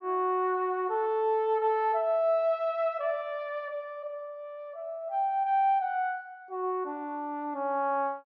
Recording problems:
none

